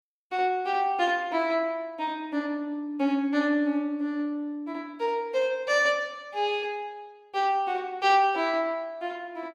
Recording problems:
none

